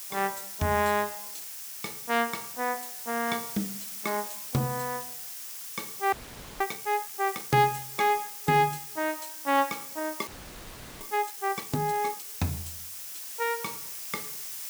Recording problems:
background hiss; slope +3 dB per octave, SNR 7 dB
audio freezing; at 6 s and at 10 s for 0.5 s

